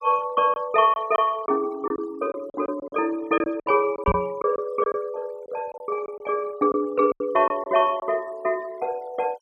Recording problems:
denoising artefacts; signal-to-artefact ratio 26 dB
lost packets; 8% of the sound replaced, filled with silence
microphone bump; at 4 s; peak +3 dB vs average level

